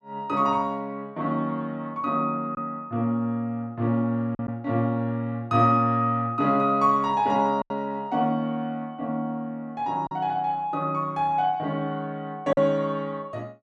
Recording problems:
lost packets; 1.7% of the sound replaced, filled with silence

